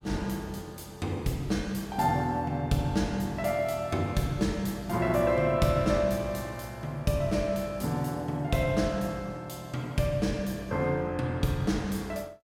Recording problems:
none

